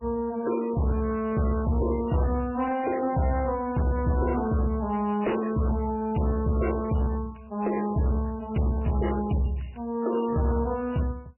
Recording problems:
lossy compression; MP3, then MP3, log-spectral distance 5 dB, nothing above 2.9 kHz
distorted audio; hard clipping, uneven, signal-to-distortion ratio 11 dB

